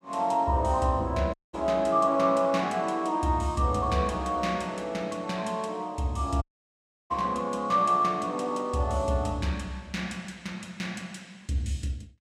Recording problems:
dropout; at 1.5 s and at 6.5 s for 0.5 s

